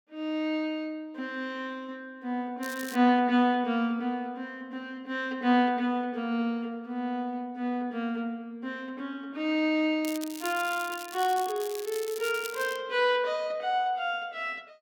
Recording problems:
crackling; at 2.5 s and from 10 to 13 s; loose cable, SNR 13 dB

